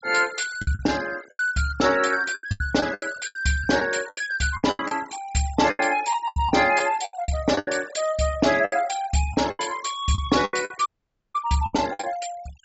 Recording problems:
treble missing; nothing above 7.7 kHz
denoising artefacts; signal-to-artefact ratio 17 dB
lost packets; 14% of the sound replaced, filled with the last packet
dropout; at 11 s

